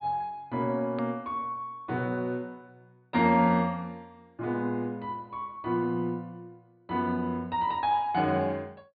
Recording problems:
treble cut off; nothing above 4.7 kHz
edit click; at 1 s

